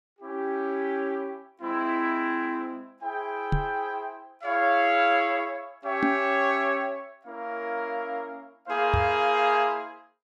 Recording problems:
knock on the microphone; at 3.5 s, at 6 s and at 9 s; peak +4 dB vs average level

